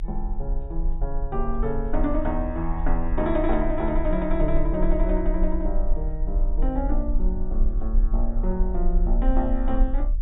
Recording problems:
treble cut off; nothing above 4 kHz
low-frequency rumble; below 38 Hz, SNR 0 dB

